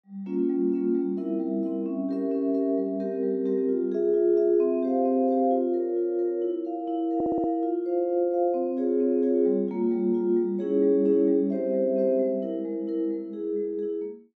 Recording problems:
audio stuttering; at 7 s

